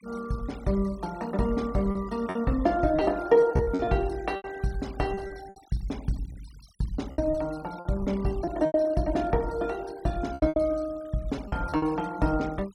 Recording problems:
noise reduction artefacts; signal-to-artefact ratio 23 dB
packet loss; 8% of the sound replaced, filled with repeated pitch periods

